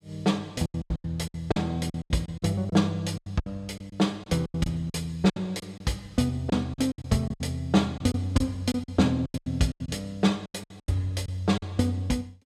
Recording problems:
lost packets; 15% of the sound replaced, filled with silence

